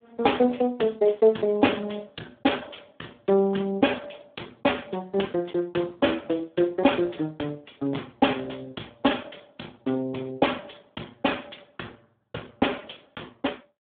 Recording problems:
telephone audio; 220 Hz to 3.5 kHz, Speex

